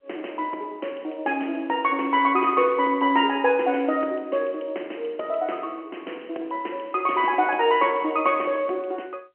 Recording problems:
phone line; 240 Hz to 3.1 kHz, G.711

